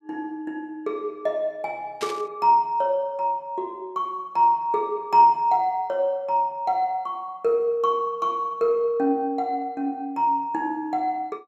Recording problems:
static burst; at 2 s; peak -6 dB vs average level

